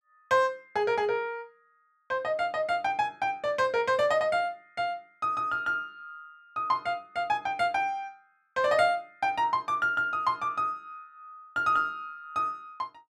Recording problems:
none

